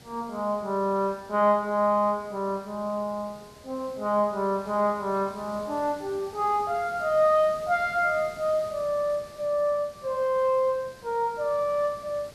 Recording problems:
hiss; SNR 22 dB

